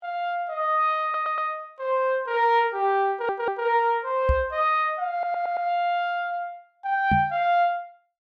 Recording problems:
audio stuttering; at 1 s, at 3 s and at 5 s
microphone bump; at 4.5 s and at 7 s; peak +3 dB vs average level

